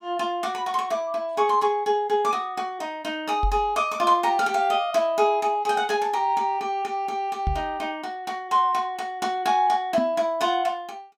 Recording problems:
knock on the microphone; at 3.5 s, at 7.5 s and at 10 s; peak +1 dB vs average level

